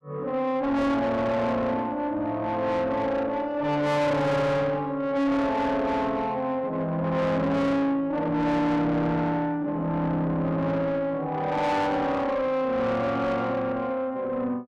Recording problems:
distorted audio; soft clipping, signal-to-distortion ratio 7 dB

